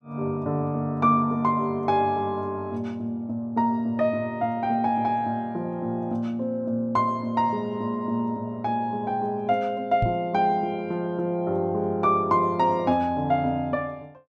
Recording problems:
microphone thump; at 10 s; peak +3 dB vs average level

